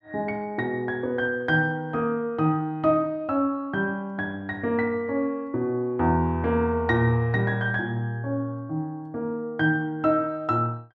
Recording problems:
none

